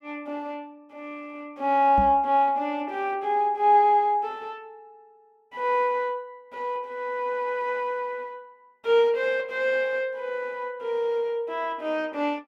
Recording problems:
knock on the microphone; at 2 s; peak -1 dB vs average level

